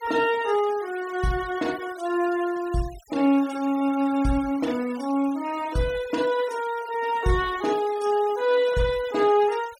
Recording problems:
denoising artefacts; signal-to-artefact ratio 19 dB

